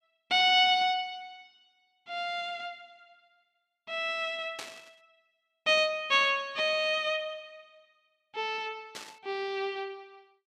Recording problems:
burst of static; at 4.5 s and at 9 s; peak -7 dB vs average level

